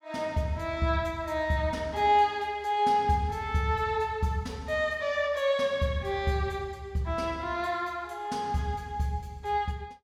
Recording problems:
none

